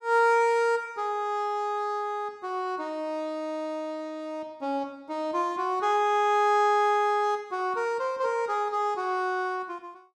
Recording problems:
none

